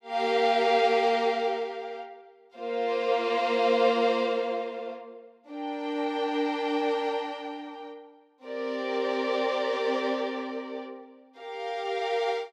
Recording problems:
none

